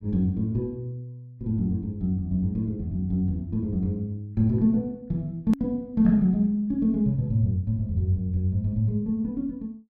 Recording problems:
click at an edit; at 5.5 s

